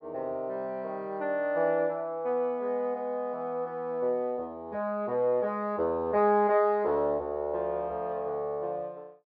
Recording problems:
treble missing; nothing above 5.5 kHz

